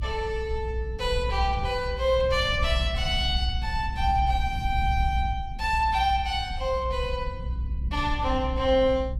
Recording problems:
low-frequency rumble; below 68 Hz, strongest tone 60 Hz, SNR 5 dB

